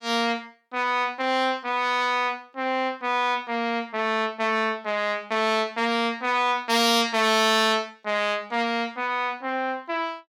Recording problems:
distortion; soft clipping, signal-to-distortion ratio 12 dB

